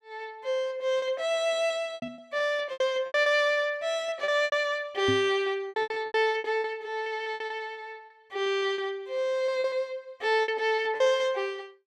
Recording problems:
packet loss; 12% of the sound replaced, filled with repeated pitch periods
knock on the microphone; at 2 s and at 5 s; peak 0 dB vs average level

